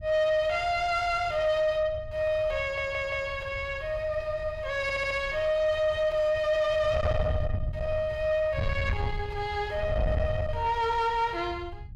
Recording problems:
distorted audio; soft clipping, signal-to-distortion ratio 10 dB
wind noise; below 120 Hz, SNR 9 dB
stutter; at 2.5 s and at 5 s

